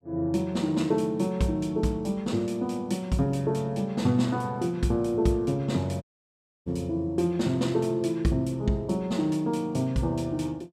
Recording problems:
audio cutting out; at 6 s for 0.5 s

